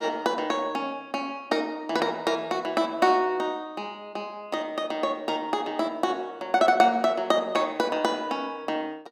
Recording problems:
none

